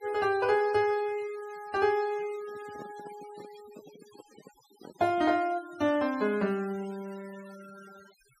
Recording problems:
denoising artefacts; signal-to-artefact ratio 22 dB
handling noise; from 2 to 5.5 s; peak -11 dB vs average level

